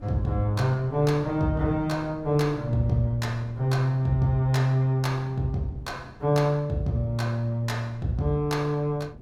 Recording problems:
wind on the microphone; below 240 Hz, SNR 20 dB

